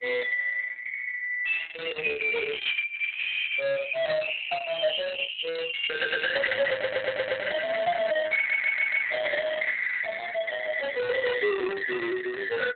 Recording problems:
lossy compression; Opus, log-spectral distance 6 dB
distortion; soft clipping, signal-to-distortion ratio 5 dB
stutter; at 6 s, at 6.5 s and at 8.5 s

